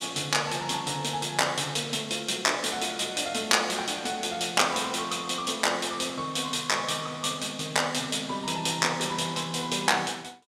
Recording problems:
none

